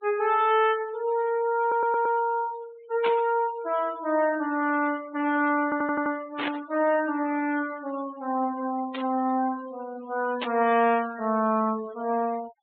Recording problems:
treble missing; nothing above 4 kHz
noise reduction artefacts; signal-to-artefact ratio 19 dB
stutter; at 1.5 s and at 5.5 s
static burst; 4 times, first at 3 s; peak -2 dB vs average level

